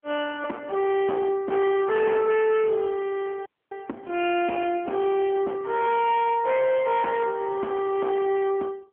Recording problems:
phone line; 260 Hz to 3.5 kHz, AMR-NB
distorted audio; hard clipping, signal-to-distortion ratio 11 dB
audio cutting out; at 3.5 s

